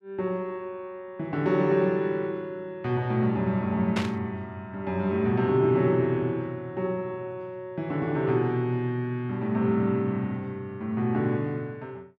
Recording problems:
burst of static; at 4 s; peak -1 dB vs average level

